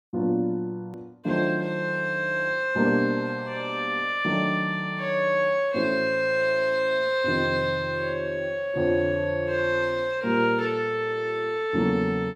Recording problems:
edit click; at 1 s

